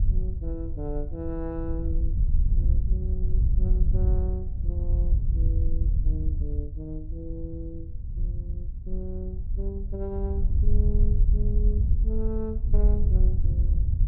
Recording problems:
wind noise; below 66 Hz, SNR -10 dB

